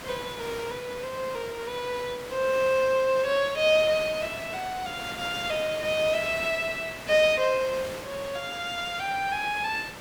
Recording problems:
hiss; slope -4 dB per octave, SNR 12 dB

